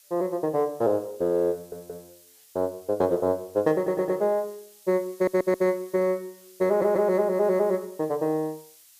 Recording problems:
hiss; slope +5 dB per octave, SNR 26 dB
stutter; 4 times, first at 1.5 s

